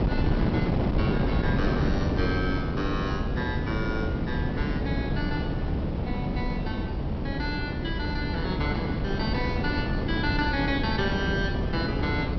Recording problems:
treble cut off; nothing above 5.6 kHz
wind on the microphone; below 310 Hz, SNR -3 dB

